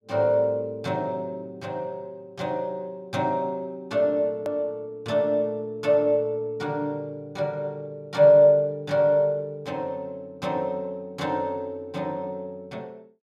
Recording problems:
edit click; at 4.5 s

